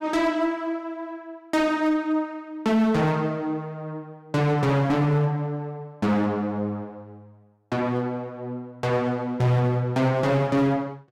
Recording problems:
distortion; hard clipping, signal-to-distortion ratio 12 dB

